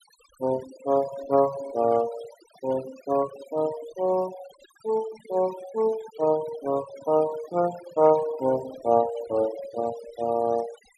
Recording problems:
denoising artefacts; signal-to-artefact ratio 16 dB

